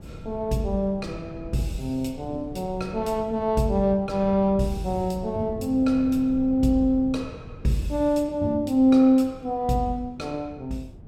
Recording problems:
wind on the microphone; below 190 Hz, SNR 17 dB

